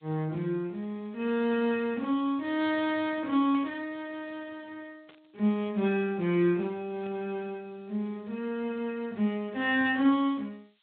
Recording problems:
low-pass filter; nothing above 4 kHz
codec artefacts; Speex, log-spectral distance 2 dB
hiss; SNR 41 dB
burst of static; at 3.5 s, at 5 s and at 7 s; peak -17 dB vs average level

